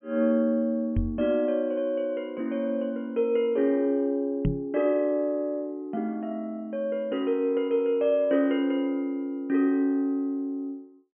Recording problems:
treble cut off; nothing above 3.2 kHz
knock on the microphone; at 1 s and at 4.5 s; peak +3 dB vs average level

